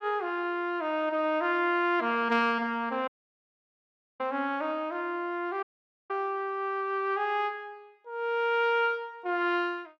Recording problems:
dropout; at 3 s for 1 s and at 5.5 s

